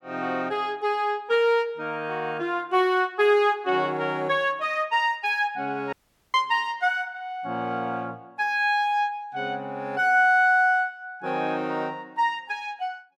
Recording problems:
audio cutting out; at 6 s

